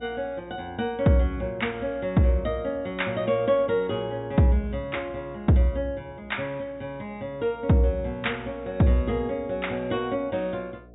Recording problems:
treble missing; nothing above 4 kHz
electrical hum; 60 Hz, harmonics up to 720 Hz, SNR 26 dB

